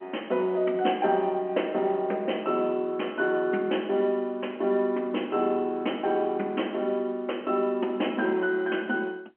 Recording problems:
telephone audio; 220 Hz to 3.2 kHz, G.711

